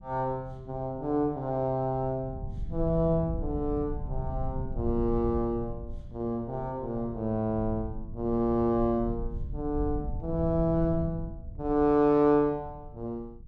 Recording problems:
rumble; below 98 Hz, SNR 10 dB

